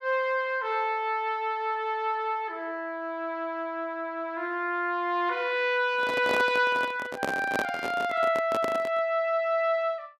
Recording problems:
handling noise; from 6 to 9 s; peak +2 dB vs average level

